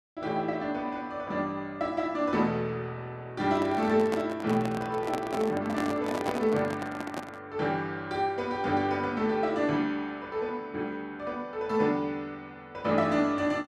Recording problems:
microphone handling noise; from 3.5 to 7.5 s; peak +1 dB vs average level

